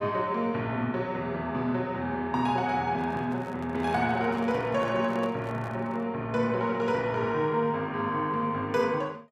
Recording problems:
handling noise; from 3 to 6 s; peak -8 dB vs average level

